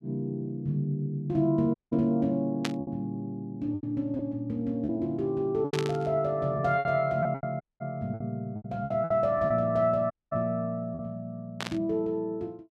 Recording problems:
packet loss; 7% of the sound replaced, filled with repeated pitch periods
audio cutting out; at 1.5 s, at 7.5 s and at 10 s
burst of static; at 2.5 s, at 5.5 s and at 12 s; peak +1 dB vs average level

